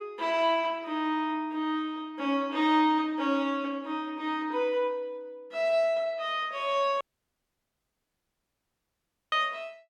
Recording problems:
dropout; at 7 s for 2.5 s

